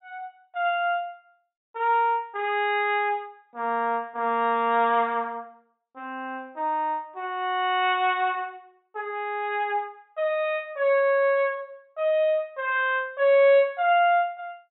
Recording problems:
treble cut off; nothing above 3.9 kHz

